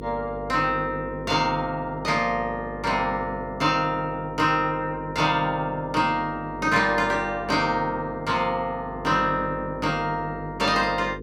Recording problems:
hum; 50 Hz, harmonics up to 500 Hz, SNR 14 dB

